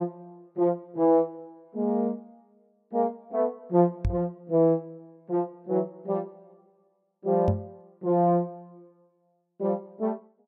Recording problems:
knock on the microphone; at 4 s and at 7.5 s; peak +5 dB vs average level

